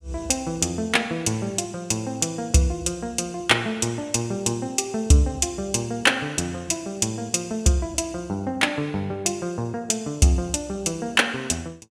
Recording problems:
none

